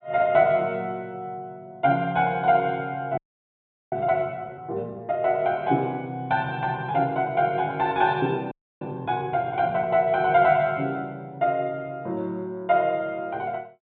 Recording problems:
treble missing; nothing above 4 kHz
audio freezing; at 3 s for 0.5 s and at 8.5 s

